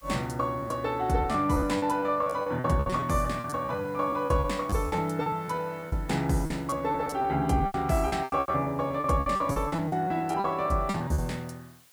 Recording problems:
hiss; slope +1 dB per octave, SNR 29 dB
packet loss; 17% of the sound replaced, filled with repeated pitch periods

